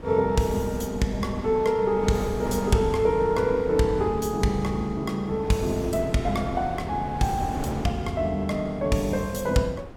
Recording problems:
wind on the microphone; below 580 Hz, SNR 12 dB

